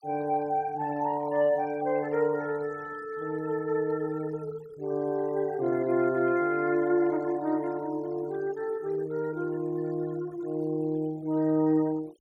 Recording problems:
noise reduction artefacts; signal-to-artefact ratio 24 dB

